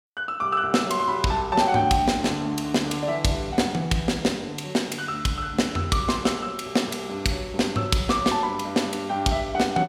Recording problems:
none

